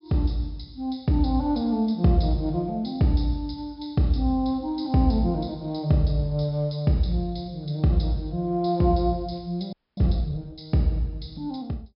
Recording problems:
low-pass filter; nothing above 5.3 kHz
frozen audio; at 9.5 s

